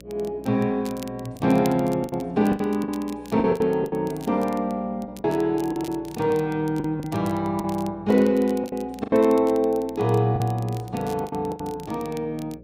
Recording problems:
hum; 60 Hz, harmonics up to 600 Hz, SNR 23 dB
crackle; vinyl, SNR 23 dB
packet loss; 9% of the sound replaced, filled with the last packet

